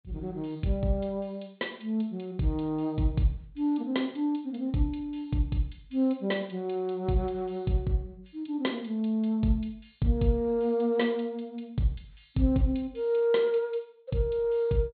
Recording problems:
treble missing; nothing above 4.3 kHz

